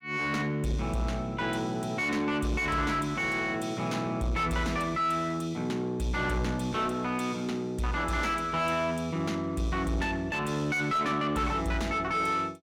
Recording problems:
distortion; soft clipping, signal-to-distortion ratio 8 dB

